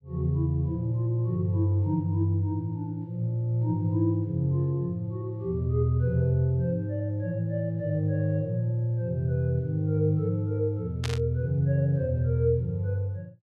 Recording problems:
burst of static; at 11 s; peak -3 dB vs average level

